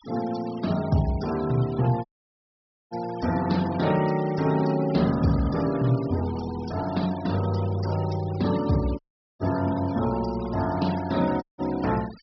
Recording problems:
treble cut off; nothing above 5.5 kHz
noise reduction artefacts; signal-to-artefact ratio 17 dB
audio cutting out; at 2 s for 1 s, at 9 s and at 11 s

